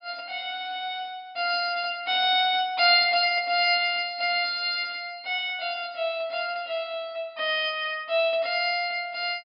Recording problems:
treble cut off; nothing above 5.5 kHz

